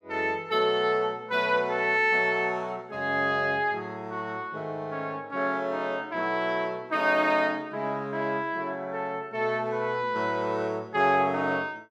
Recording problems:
none

